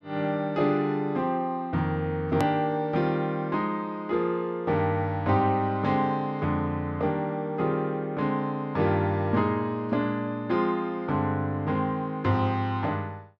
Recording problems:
edit click; at 2.5 s

